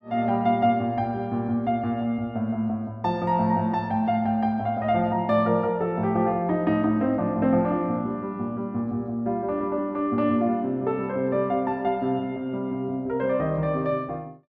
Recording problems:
none

